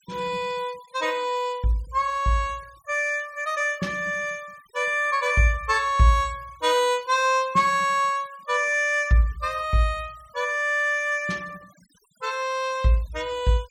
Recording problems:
noise reduction artefacts; signal-to-artefact ratio 26 dB

